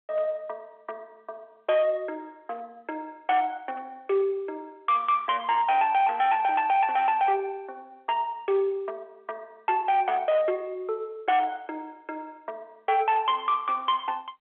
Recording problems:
phone line; 320 Hz to 3.4 kHz, G.711
distortion; hard clipping, signal-to-distortion ratio 11 dB

